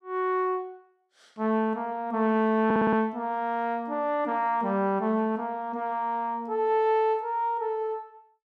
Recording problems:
audio stuttering; at 2.5 s

